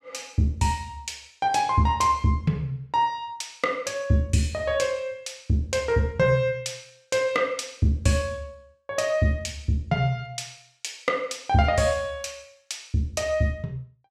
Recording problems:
none

